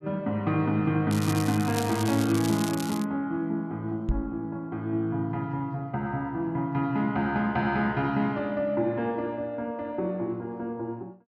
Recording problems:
crackle; from 1 to 3 s; loose cable, SNR 10 dB
microphone thump; at 4 s; peak +4 dB vs average level

